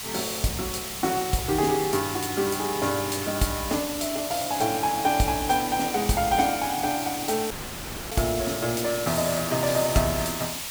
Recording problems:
background hiss; SNR 6 dB
dropout; at 7.5 s for 0.5 s

